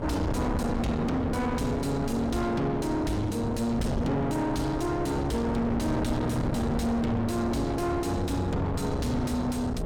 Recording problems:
distorted audio; soft clipping, signal-to-distortion ratio 5 dB
wind on the microphone; below 480 Hz, SNR 3 dB

